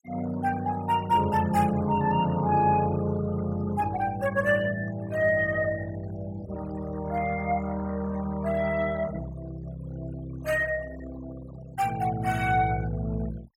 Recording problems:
denoising artefacts; signal-to-artefact ratio 19 dB

